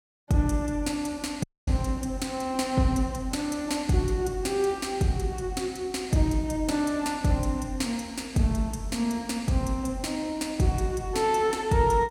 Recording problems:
audio cutting out; at 1.5 s

